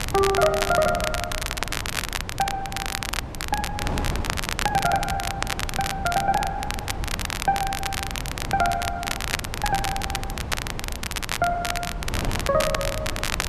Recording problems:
wind noise; below 300 Hz, SNR 7 dB
crackle; vinyl, SNR 3 dB

